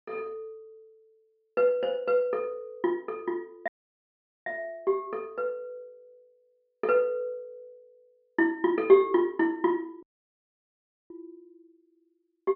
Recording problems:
treble cut off; nothing above 5.5 kHz
dropout; at 3.5 s for 1 s and at 10 s for 1 s

